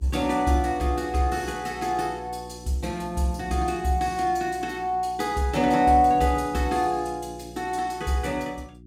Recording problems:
electrical hum; 60 Hz, harmonics up to 360 Hz, SNR 20 dB

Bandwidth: 16.5 kHz